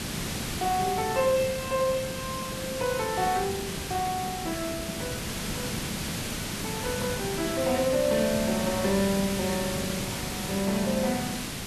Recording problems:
hiss; slope -2 dB per octave, SNR 3 dB

